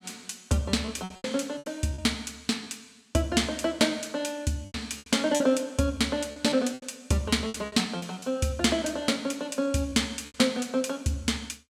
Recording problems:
packet loss; 8% of the sound replaced, filled with repeated pitch periods

